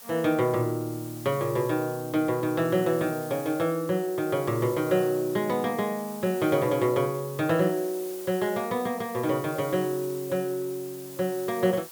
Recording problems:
background hiss; SNR 15 dB

